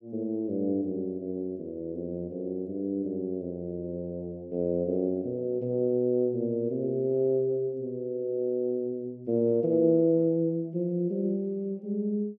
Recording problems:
none

